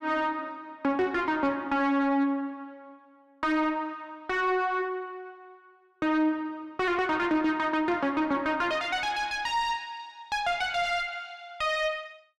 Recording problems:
distorted audio; soft clipping, signal-to-distortion ratio 11 dB

